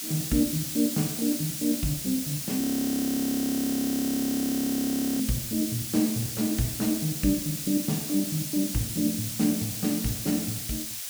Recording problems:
hiss; slope +4 dB per octave, SNR 4 dB
audio freezing; at 2.5 s for 2.5 s

